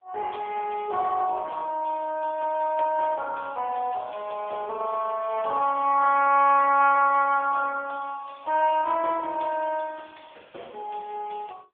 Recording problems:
telephone audio; 340 Hz to 2.7 kHz, AMR-NB

